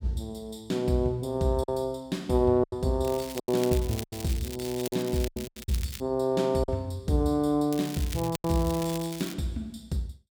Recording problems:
packet loss; 6% of the sound replaced, filled with silence
crackling; from 3 to 6 s and from 7.5 to 9.5 s; loose cable, SNR 12 dB

